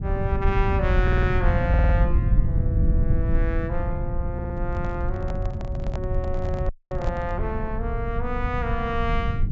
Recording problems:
treble cut off; nothing above 8 kHz
rumble; below 110 Hz, SNR -4 dB
audio stuttering; at 1 s, at 1.5 s and at 4.5 s
handling noise; from 4.5 to 7.5 s; peak -3 dB vs average level
audio cutting out; at 6.5 s

